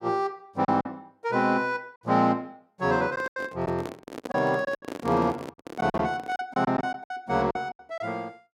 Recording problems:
lost packets; 9% of the sound replaced, filled with silence
handling noise; from 3 to 6.5 s; peak -4 dB vs average level

